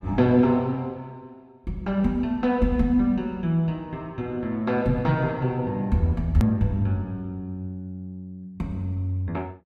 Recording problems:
hard cut with a click; at 6.5 s

